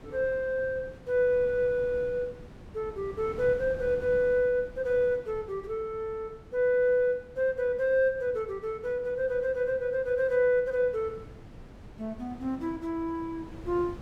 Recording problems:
wind noise; below 370 Hz, SNR 19 dB

